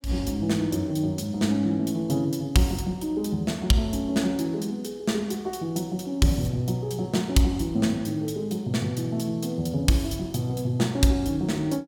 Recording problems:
none

